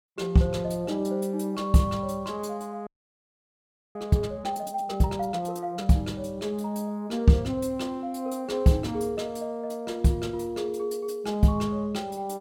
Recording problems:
audio freezing; at 3 s for 1 s

